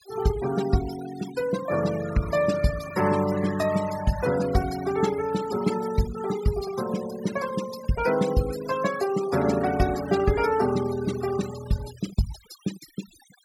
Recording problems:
denoising artefacts; signal-to-artefact ratio 13 dB

